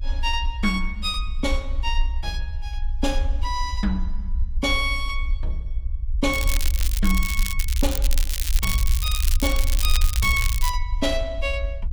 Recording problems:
low-frequency rumble; below 58 Hz, strongest tone 24 Hz, SNR 0 dB
crackling; from 6.5 to 11 s; loose cable, SNR 3 dB

